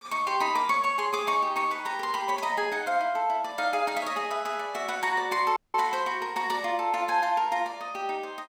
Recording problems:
audio cutting out; at 5.5 s

